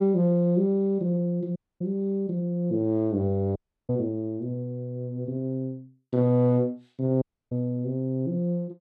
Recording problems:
dropout; at 1.5 s, at 3.5 s and at 7 s

